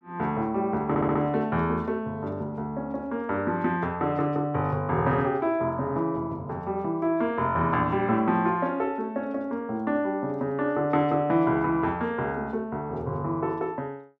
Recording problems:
audio stuttering; at 1 s

